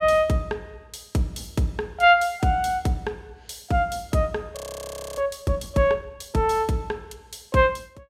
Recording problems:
frozen audio; at 4.5 s for 0.5 s

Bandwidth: 16 kHz